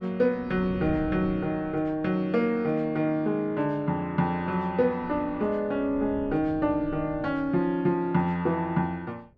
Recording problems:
wind on the microphone; below 230 Hz, SNR 16 dB

